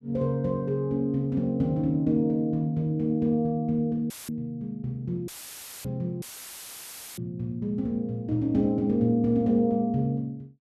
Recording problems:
dropout; at 4 s, at 5.5 s for 0.5 s and at 6 s for 1 s; filled with static

